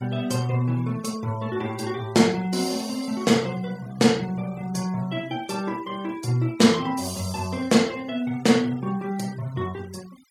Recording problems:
denoising artefacts; signal-to-artefact ratio 23 dB

